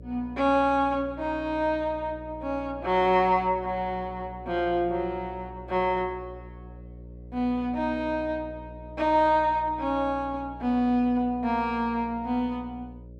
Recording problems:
electrical hum; 60 Hz, harmonics up to 600 Hz, SNR 18 dB

